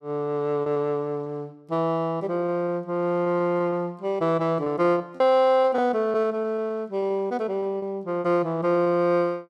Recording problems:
packet loss; 7% of the sound replaced, filled with repeated pitch periods

